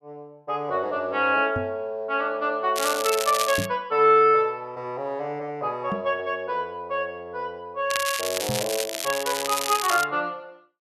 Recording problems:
knock on the microphone; 4 times, first at 1.5 s; peak -1 dB vs average level
crackle; at 3 s and from 8 to 10 s; loose cable, SNR 4 dB

